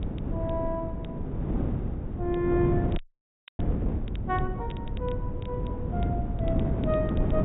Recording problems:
treble missing; nothing above 4 kHz
low-frequency rumble; below 110 Hz, SNR 7 dB
wind noise; below 270 Hz, SNR -1 dB
crackle; vinyl, SNR 22 dB
frozen audio; at 3 s for 0.5 s

